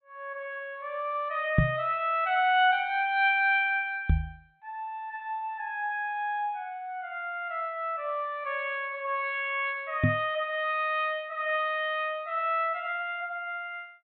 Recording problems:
treble cut off; nothing above 4 kHz
knock on the microphone; at 1.5 s, at 4 s and at 10 s; peak +9 dB vs average level

